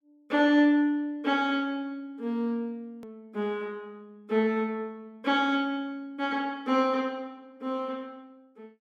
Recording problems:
hard cut with a click; at 3 s

